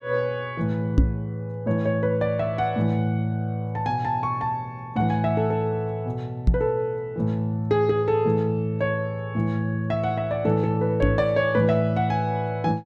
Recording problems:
microphone bump; at 1 s, at 6.5 s and at 11 s; peak +9 dB vs average level

